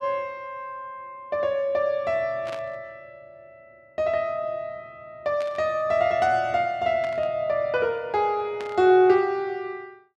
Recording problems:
static burst; 4 times, first at 2.5 s; peak -10 dB vs average level

